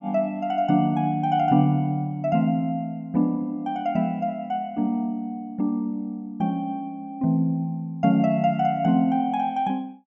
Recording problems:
none

